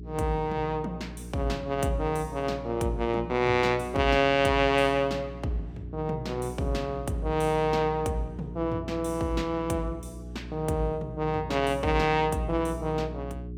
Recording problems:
hum; 60 Hz, harmonics up to 420 Hz, SNR 13 dB

